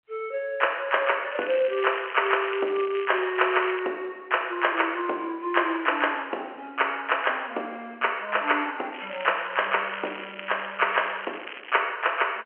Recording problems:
telephone audio; 320 Hz to 3.1 kHz, G.711
crackle; from 1.5 to 4 s and from 9 to 12 s; loose cable, SNR 13 dB

